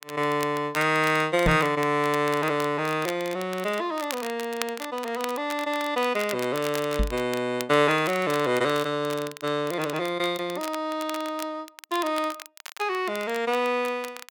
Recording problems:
crackling; vinyl, SNR 14 dB
knock on the microphone; at 1.5 s and at 7 s; peak +5 dB vs average level

